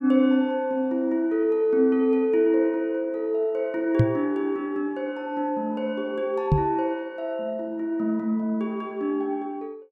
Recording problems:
microphone bump; at 4 s and at 6.5 s; peak +8 dB vs average level

